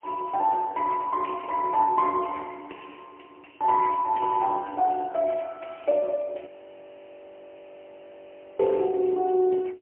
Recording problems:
telephone audio; 240 Hz to 3.2 kHz, AMR-NB, then MP3
frozen audio; at 6.5 s for 2 s

